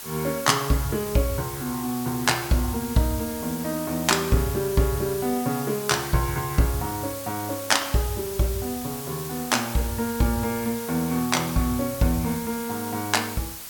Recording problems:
hiss; slope +1 dB per octave, SNR 9 dB

